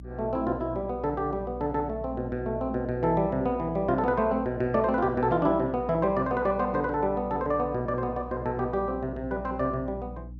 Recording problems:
hum; 60 Hz, harmonics up to 300 Hz, SNR 15 dB

